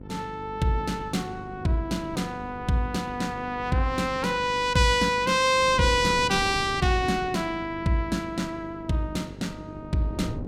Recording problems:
hum; 50 Hz, harmonics up to 1 kHz, SNR 17 dB
wind on the microphone; below 320 Hz, SNR 16 dB

